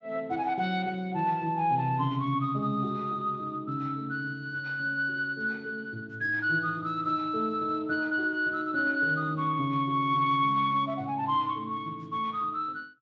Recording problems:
codec artefacts; Speex, log-spectral distance 2 dB

